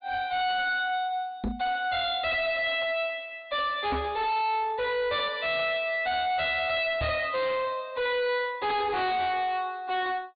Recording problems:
treble cut off; nothing above 4.6 kHz
distortion; hard clipping, uneven, signal-to-distortion ratio 7 dB
knock on the microphone; at 1.5 s, at 4 s and at 7 s; peak +1 dB vs average level

